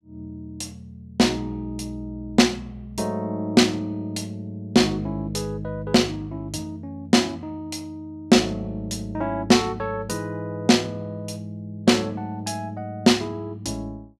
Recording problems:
none

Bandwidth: 15 kHz